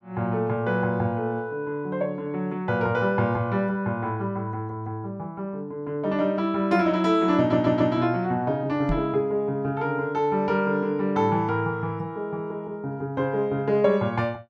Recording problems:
stutter; at 7.5 s
microphone thump; at 9 s; peak +2 dB vs average level

